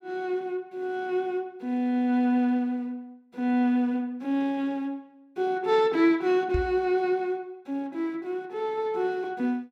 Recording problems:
knock on the microphone; at 6.5 s; peak +1 dB vs average level

